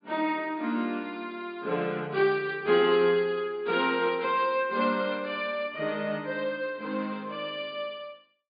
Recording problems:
low-pass filter; nothing above 4.9 kHz

